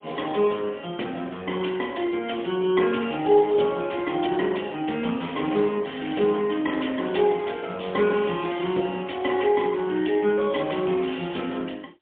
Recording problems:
phone line; 240 Hz to 3.4 kHz, AMR-NB, then MP3

